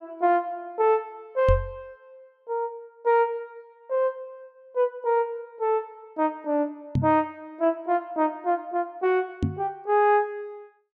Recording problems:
knock on the microphone; at 1.5 s, at 7 s and at 9.5 s; peak +5 dB vs average level

